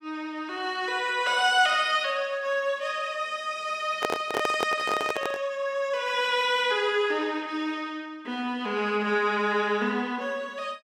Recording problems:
handling noise; from 4 to 5.5 s; peak +2 dB vs average level

